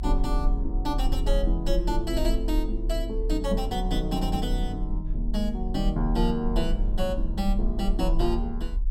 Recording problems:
rumble; below 38 Hz, strongest tone 36 Hz, SNR 1 dB

